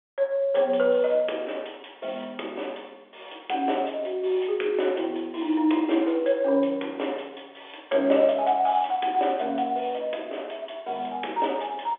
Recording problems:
phone line; 300 Hz to 3.5 kHz, G.711

